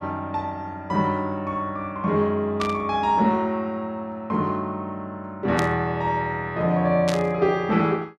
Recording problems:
static burst; at 2.5 s, at 5.5 s and at 7 s; peak -2 dB vs average level

